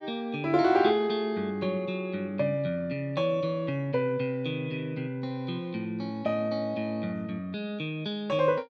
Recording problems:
none

